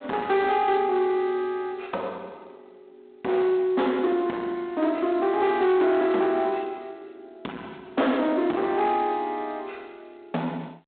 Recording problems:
phone line; 220 Hz to 3.7 kHz, G.726
distortion; soft clipping, signal-to-distortion ratio 11 dB

